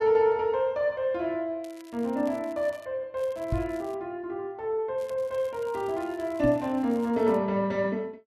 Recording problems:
crackle; from 1.5 to 3 s, at 3 s and from 5 to 7.5 s; loose cable, SNR 27 dB
microphone thump; at 3.5 s and at 6.5 s; peak +4 dB vs average level

